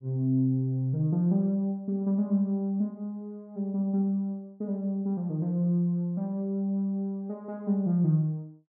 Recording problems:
none

